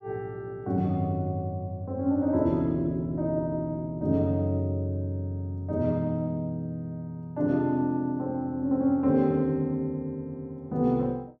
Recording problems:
none

